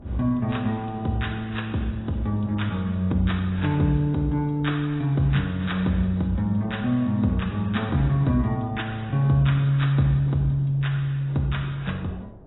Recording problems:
codec artefacts; AAC, log-spectral distance 3 dB, nothing above 3.9 kHz
wind on the microphone; below 380 Hz, SNR 23 dB

